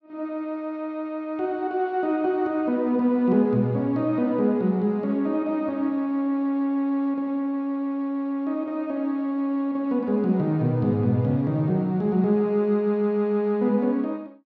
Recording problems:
none

